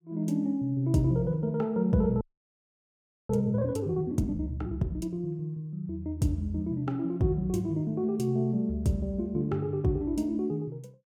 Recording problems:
frozen audio; at 2 s for 1 s

